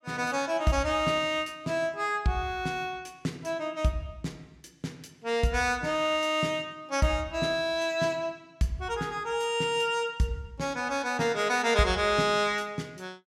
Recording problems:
none

